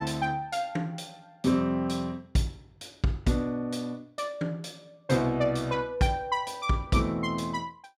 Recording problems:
none

